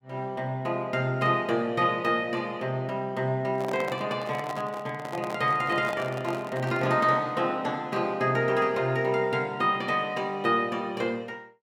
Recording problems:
microphone handling noise; from 3.5 to 7 s; peak -5 dB vs average level

